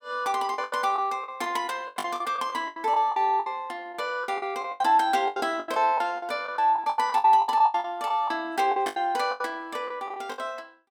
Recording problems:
packet loss; 18% of the sound replaced, filled with the last packet

